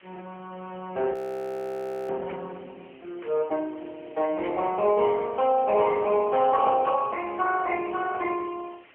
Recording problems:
telephone audio; 320 Hz to 3.1 kHz, AMR-NB
background hiss; SNR 28 dB
frozen audio; at 1 s for 1 s
static burst; at 2.5 s, at 3 s and at 4.5 s; peak -12 dB vs average level

